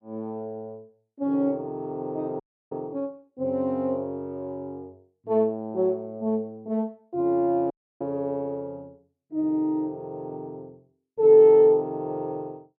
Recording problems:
dropout; at 2.5 s and at 7.5 s

